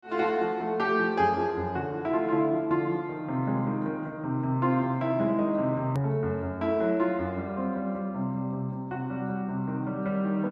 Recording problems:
hard cut with a click; at 6 s

